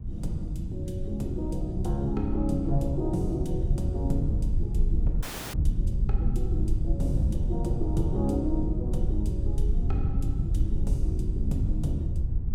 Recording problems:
rumble; below 82 Hz, SNR -3 dB
audio freezing; at 5 s

